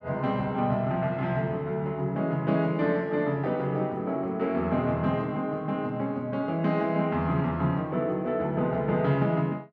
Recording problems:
none

